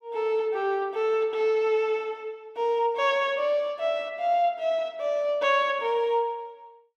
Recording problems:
none

